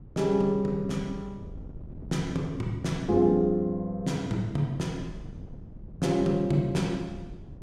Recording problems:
wind noise; below 170 Hz, SNR 17 dB

